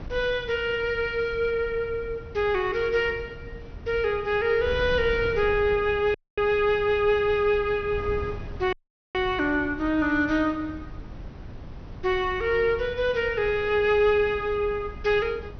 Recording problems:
treble cut off; nothing above 6.1 kHz
wind on the microphone; below 150 Hz, SNR 16 dB
dropout; at 6 s and at 8.5 s

